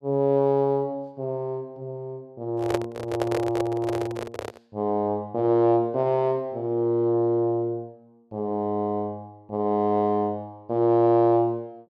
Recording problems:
microphone handling noise; from 2.5 to 4.5 s; peak +2 dB vs average level

